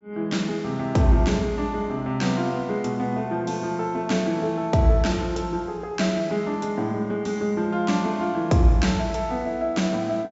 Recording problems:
low-pass filter; nothing above 8 kHz

